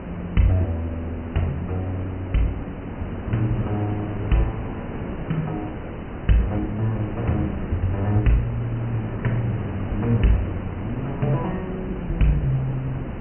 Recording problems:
treble cut off; nothing above 3 kHz
hiss; SNR 8 dB
rumble; below 160 Hz, SNR 17 dB

